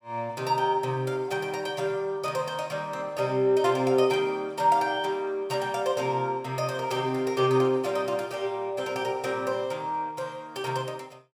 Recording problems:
none

